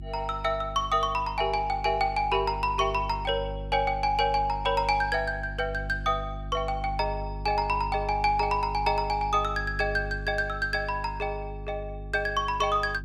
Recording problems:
hum; 50 Hz, harmonics up to 350 Hz, SNR 11 dB

